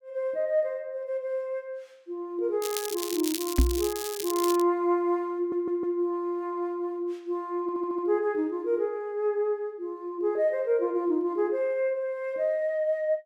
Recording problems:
crackling; from 2.5 to 4.5 s; loose cable, SNR 6 dB
knock on the microphone; at 3.5 s; peak +9 dB vs average level
stutter; at 5.5 s and at 7.5 s

